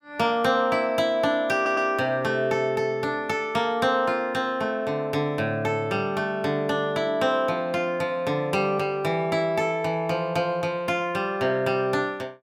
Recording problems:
audio stuttering; at 1.5 s

